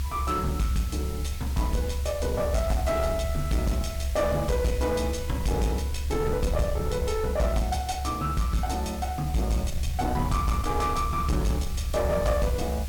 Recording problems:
distortion; soft clipping, signal-to-distortion ratio 10 dB
background hiss; slope +2 dB per octave, SNR 16 dB
low-frequency rumble; below 72 Hz, strongest tone 70 Hz, SNR 4 dB

